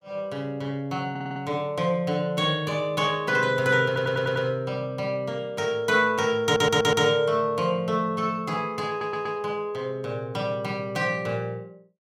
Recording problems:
audio stuttering; 4 times, first at 1 s

